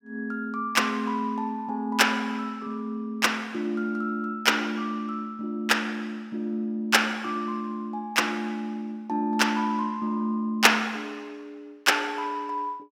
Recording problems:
none

